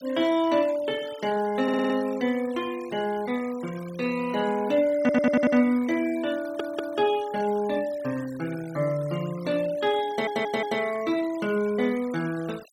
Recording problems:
noise reduction artefacts; signal-to-artefact ratio 20 dB
audio stuttering; 4 times, first at 1.5 s

